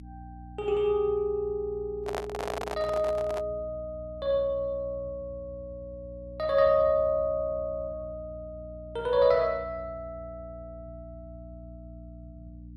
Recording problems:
hum; 60 Hz, harmonics up to 300 Hz, SNR 17 dB
microphone handling noise; from 2 to 3.5 s; peak -1 dB vs average level

